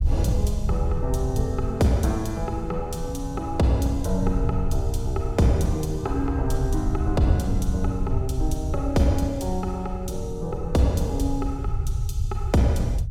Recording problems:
rumble; below 94 Hz, SNR 3 dB

